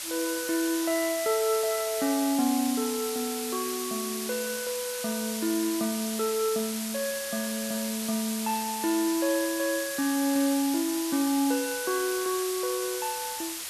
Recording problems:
hiss; slope +2 dB per octave, SNR 4 dB

